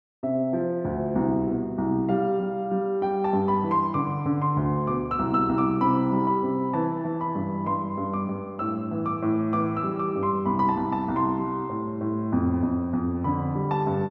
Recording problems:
none

